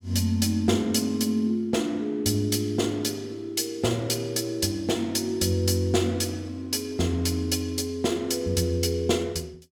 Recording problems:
none

